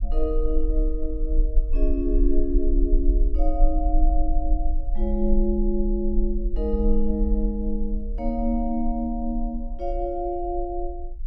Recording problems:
low-frequency rumble; below 40 Hz, SNR 0 dB

